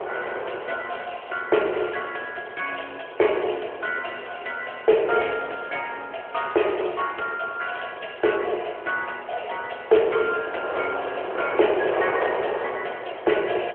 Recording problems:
telephone audio; 320 Hz to 3.3 kHz, AMR-NB
wind on the microphone; below 900 Hz, SNR 7 dB

